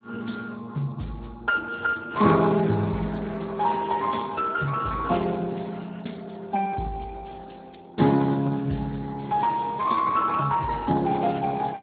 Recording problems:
codec artefacts; AAC, then Speex, log-spectral distance 6 dB, nothing above 3.9 kHz

